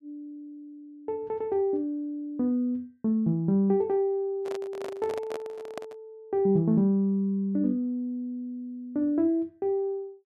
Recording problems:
handling noise; from 4.5 to 6 s; peak -5 dB vs average level

